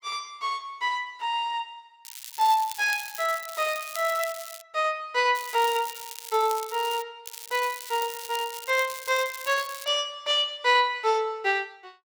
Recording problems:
crackling; from 2 to 4.5 s, from 5.5 to 7 s and from 7.5 to 10 s; loose cable, SNR 12 dB

